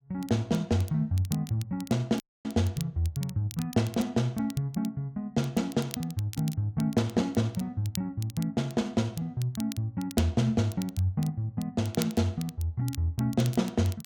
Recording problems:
crackling; vinyl, SNR 16 dB
dropout; at 2 s

